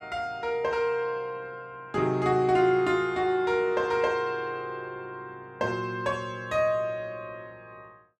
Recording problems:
none

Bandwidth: 14 kHz